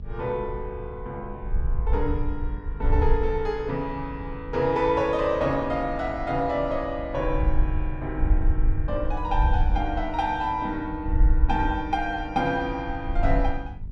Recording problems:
hum; 50 Hz, harmonics up to 650 Hz, SNR 18 dB
wind on the microphone; below 62 Hz, SNR 2 dB

